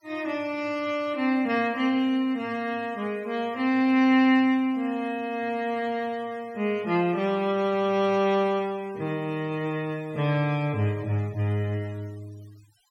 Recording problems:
noise reduction artefacts; signal-to-artefact ratio 26 dB

